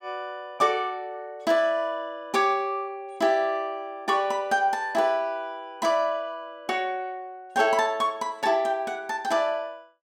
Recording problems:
none

